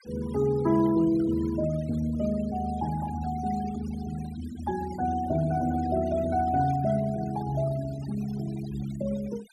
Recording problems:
denoising artefacts; signal-to-artefact ratio 18 dB

